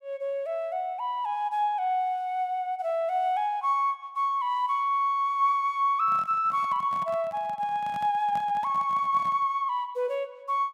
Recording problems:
microphone handling noise; from 6 to 9.5 s; peak -11 dB vs average level

